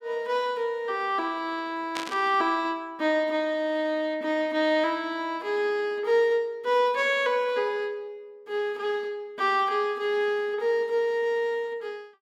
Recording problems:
static burst; at 2 s; peak -3 dB vs average level

